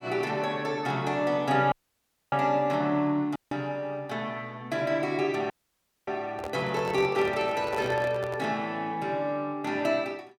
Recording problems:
audio cutting out; at 1.5 s for 0.5 s, at 3.5 s and at 5.5 s for 0.5 s
microphone handling noise; from 6.5 to 8.5 s; peak -4 dB vs average level

